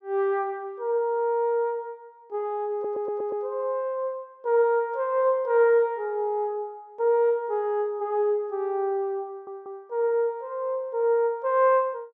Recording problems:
audio stuttering; at 2.5 s and at 9.5 s

